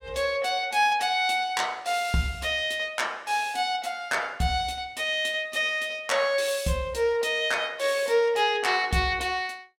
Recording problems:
none

